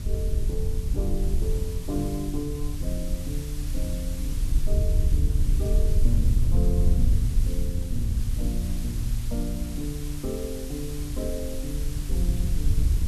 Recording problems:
hiss; slope 0 dB per octave, SNR 9 dB
wind noise; below 70 Hz, SNR -6 dB

